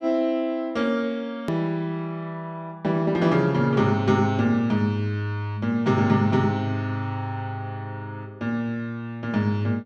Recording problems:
edit click; at 1.5 s

